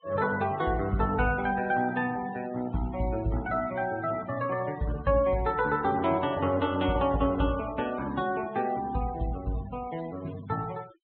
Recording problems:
low-pass filter; nothing above 4 kHz
denoising artefacts; signal-to-artefact ratio 19 dB

